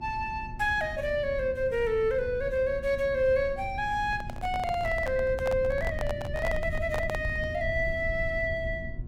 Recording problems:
hum; 60 Hz, harmonics up to 1.1 kHz, SNR 21 dB
rumble; below 100 Hz, SNR 11 dB
handling noise; from 4 to 7.5 s; peak -2 dB vs average level

